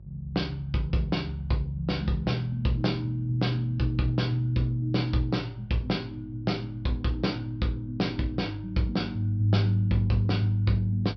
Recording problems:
low-pass filter; nothing above 5.5 kHz
electrical hum; 50 Hz, harmonics up to 400 Hz, SNR 19 dB

